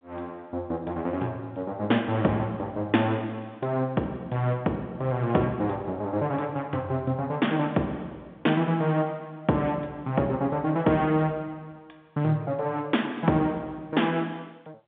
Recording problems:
phone line; 170 Hz to 3.6 kHz, G.711

